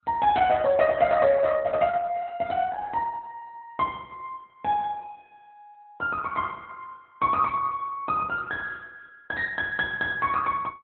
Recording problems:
codec artefacts; Opus, log-spectral distance 3 dB

